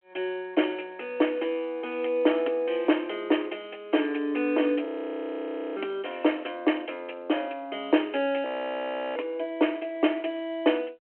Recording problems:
telephone audio; 260 Hz to 3.2 kHz, G.726
audio freezing; at 5 s for 1 s and at 8.5 s for 0.5 s

